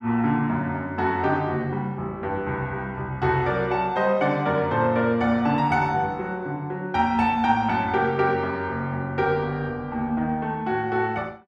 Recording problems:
none

